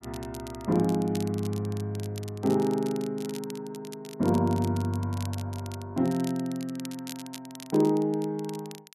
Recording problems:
crackle; vinyl, SNR 17 dB

